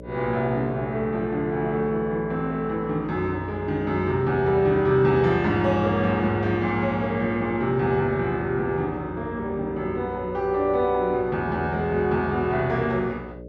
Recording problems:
hum; 60 Hz, harmonics up to 600 Hz, SNR 16 dB

